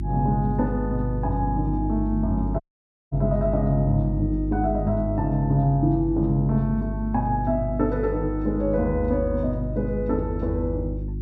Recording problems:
hum; 50 Hz, harmonics up to 350 Hz, SNR 5 dB
dropout; at 2.5 s for 0.5 s

